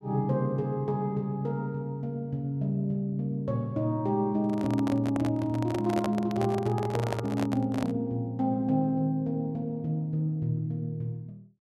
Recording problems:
handling noise; from 4.5 to 8 s; peak +1 dB vs average level

